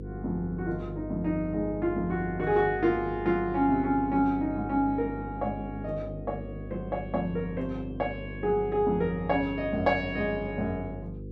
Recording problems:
hum; 50 Hz, harmonics up to 500 Hz, SNR 10 dB

